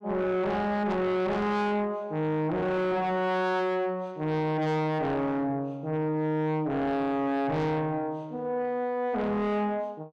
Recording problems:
distortion; soft clipping, signal-to-distortion ratio 7 dB

